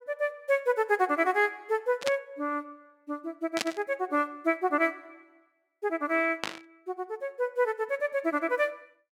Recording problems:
static burst; at 2 s, at 3.5 s and at 6.5 s; peak +3 dB vs average level

